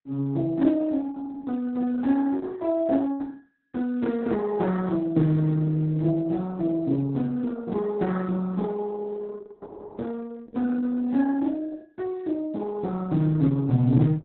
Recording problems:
lossy compression; Speex, then Opus, log-spectral distance 3 dB, nothing above 4 kHz

